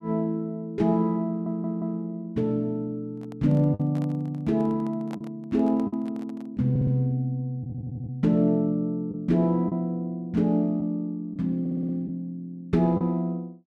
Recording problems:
lost packets; 2% of the sound replaced, filled with the last packet
audio stuttering; 4 times, first at 1.5 s
microphone handling noise; from 3 to 6.5 s; peak -10 dB vs average level

